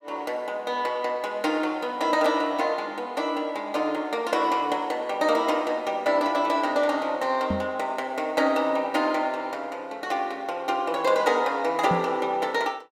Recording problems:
microphone bump; at 7.5 s and at 12 s; peak +1 dB vs average level

